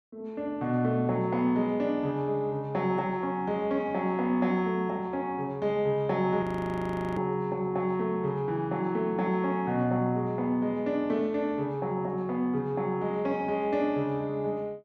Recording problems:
audio freezing; at 6.5 s for 0.5 s

